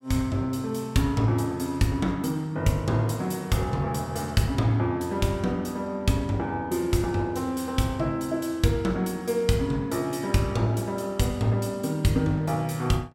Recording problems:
none

